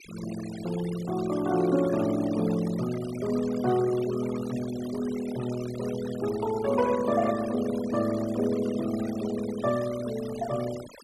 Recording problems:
noise reduction artefacts; signal-to-artefact ratio 15 dB

